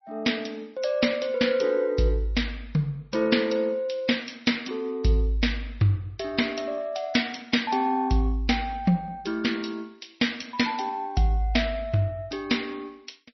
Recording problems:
codec artefacts; MP3, log-spectral distance 4 dB, nothing above 5.8 kHz

